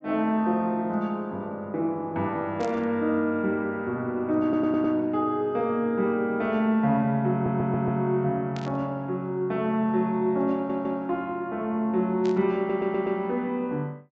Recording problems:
low-pass filter; nothing above 8 kHz
burst of static; at 2.5 s, at 8.5 s and at 12 s; peak -11 dB vs average level
audio stuttering; 4 times, first at 4.5 s

